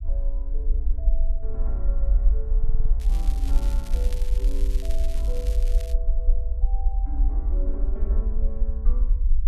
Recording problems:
rumble; below 48 Hz, SNR -15 dB
stutter; at 2.5 s
crackle; from 3 to 6 s; loose cable, SNR 5 dB

